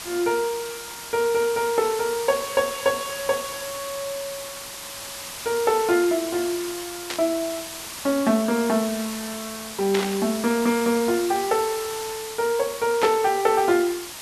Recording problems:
background hiss; slope 0 dB per octave, SNR 9 dB
static burst; at 7 s, at 10 s and at 13 s; peak 0 dB vs average level

